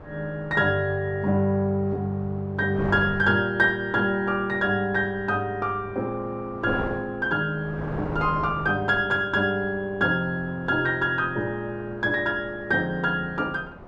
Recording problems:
wind noise; below 790 Hz, SNR 15 dB

